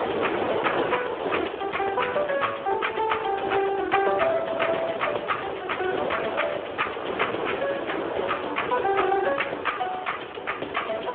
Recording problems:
phone line; 300 Hz to 3.4 kHz, Speex
wind on the microphone; below 990 Hz, SNR 5 dB

